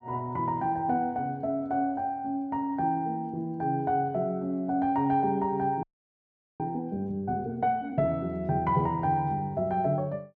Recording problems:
frozen audio; at 6 s for 1 s

